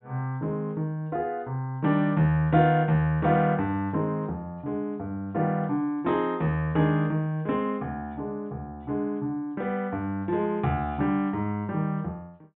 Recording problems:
low-pass filter; nothing above 3.9 kHz

